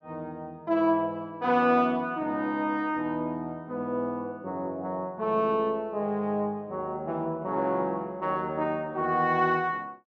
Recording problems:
none

